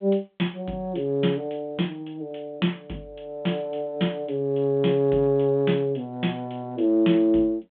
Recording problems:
telephone audio; 150 Hz to 3.5 kHz, G.726

